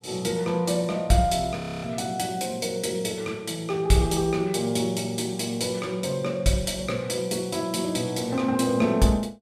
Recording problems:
frozen audio; at 1.5 s

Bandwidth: 15.5 kHz